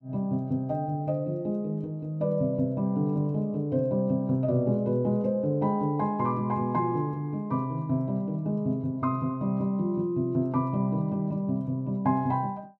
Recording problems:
none

